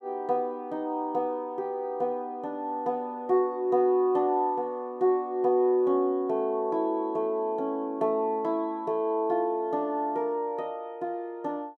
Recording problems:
none

